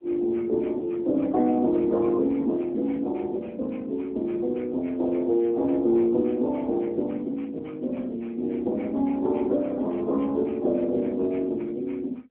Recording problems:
phone line; 190 Hz to 2.2 kHz, AMR-NB

